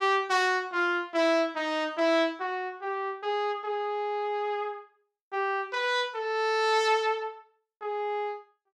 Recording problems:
none

